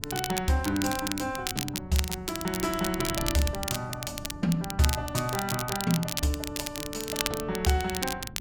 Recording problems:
wind noise; below 190 Hz, SNR 14 dB
crackling; vinyl, SNR 4 dB

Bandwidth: 17 kHz